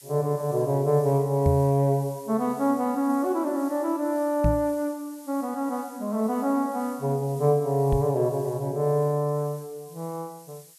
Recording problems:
hiss; slope +5 dB per octave, SNR 22 dB
microphone bump; at 1.5 s, at 4.5 s and at 8 s; peak +5 dB vs average level

